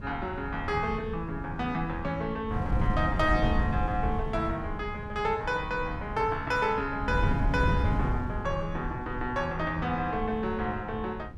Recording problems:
wind on the microphone; below 150 Hz, SNR 4 dB

